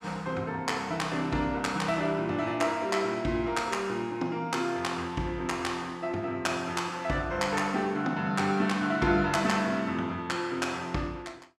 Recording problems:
none

